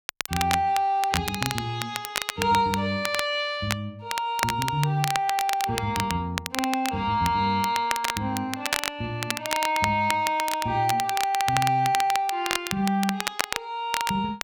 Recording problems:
crackle; vinyl, SNR 5 dB

